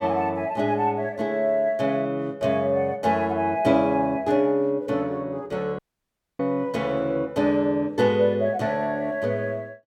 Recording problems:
dropout; at 6 s for 0.5 s

